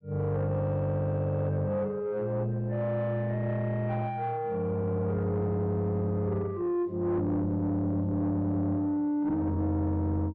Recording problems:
distortion; soft clipping, signal-to-distortion ratio 11 dB

